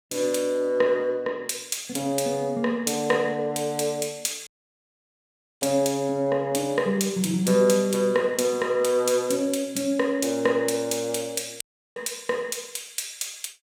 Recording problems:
dropout; at 4.5 s for 1 s and at 12 s

